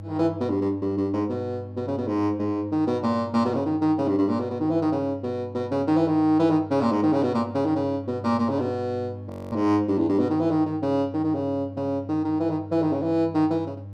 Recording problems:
hum; 50 Hz, harmonics up to 600 Hz, SNR 15 dB
audio freezing; at 9.5 s

